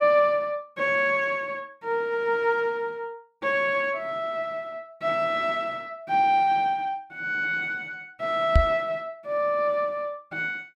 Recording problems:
microphone thump; at 8.5 s; peak +9 dB vs average level

